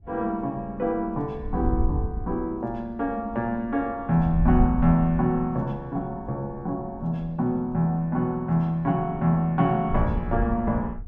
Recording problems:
wind on the microphone; below 78 Hz, SNR 5 dB

